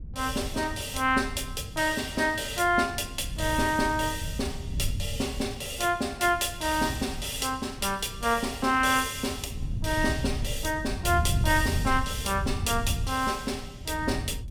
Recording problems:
wind on the microphone; below 110 Hz, SNR 8 dB

